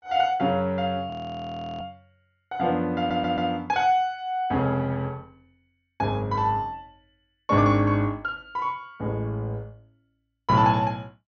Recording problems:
treble missing; nothing above 6.5 kHz
frozen audio; at 1 s for 0.5 s
stutter; at 3 s

